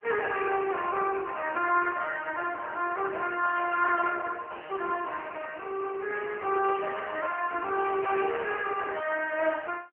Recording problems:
telephone audio; 320 Hz to 2.9 kHz, AMR-NB

